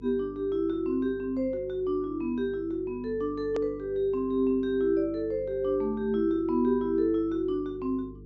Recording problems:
low-pass filter; nothing above 8 kHz
electrical hum; 50 Hz, harmonics up to 450 Hz, SNR 19 dB
hard cut with a click; at 3.5 s

